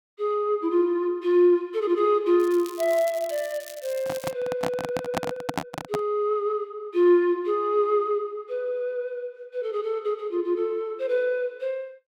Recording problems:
crackle; from 2.5 to 4.5 s; loose cable, SNR 17 dB
microphone handling noise; from 4 to 6 s; peak +2 dB vs average level

